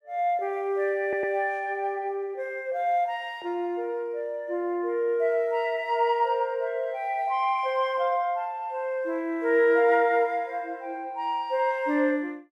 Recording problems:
stutter; at 1 s

